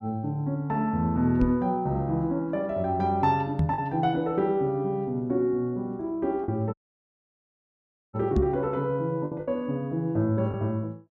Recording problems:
packet loss; 2% of the sound replaced, filled with the last packet
microphone thump; at 1.5 s, at 3.5 s and at 8.5 s; peak +6 dB vs average level
dropout; at 6.5 s for 1.5 s

